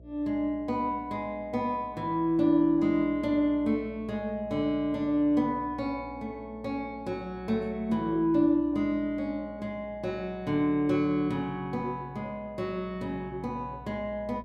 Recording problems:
electrical hum; 60 Hz, harmonics up to 660 Hz, SNR 22 dB

